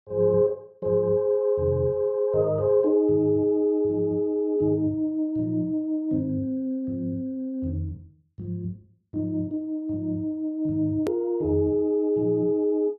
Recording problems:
hard cut with a click; at 11 s

